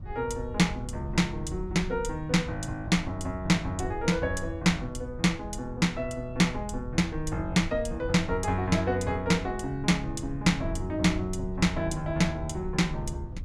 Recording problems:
rumble; below 94 Hz, SNR 11 dB

